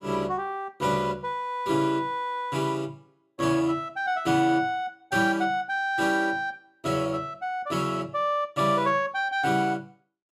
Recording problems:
none

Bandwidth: 15 kHz